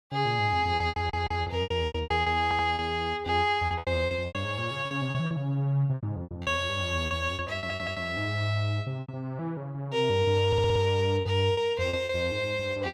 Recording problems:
lost packets; 12% of the sound replaced, filled with repeated pitch periods
audio stuttering; 4 times, first at 1 s

